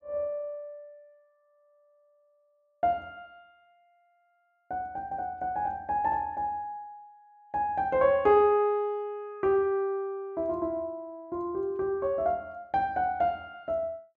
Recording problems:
none

